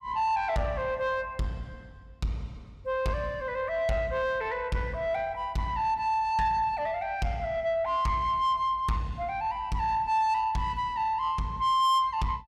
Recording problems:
distortion; soft clipping, signal-to-distortion ratio 10 dB

